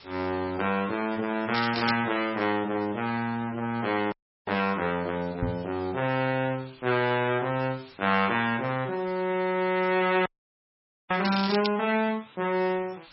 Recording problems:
codec artefacts; MP3, log-spectral distance 12 dB, nothing above 4.8 kHz
hiss; SNR 23 dB
crackling; at 1.5 s and at 11 s; loose cable, SNR 8 dB
audio cutting out; at 4 s and at 10 s for 1 s
microphone thump; at 5.5 s; peak 0 dB vs average level

